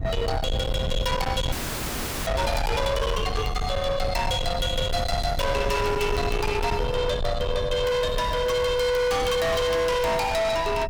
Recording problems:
distorted audio; soft clipping, signal-to-distortion ratio 7 dB
rumble; below 550 Hz, SNR 5 dB
frozen audio; at 1.5 s for 1 s

